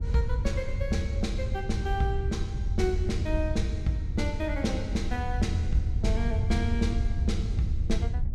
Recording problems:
wind on the microphone; below 88 Hz, SNR -1 dB

